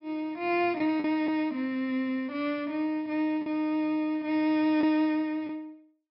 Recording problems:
low-pass filter; nothing above 5.4 kHz
lost packets; 3% of the sound replaced, filled with the last packet

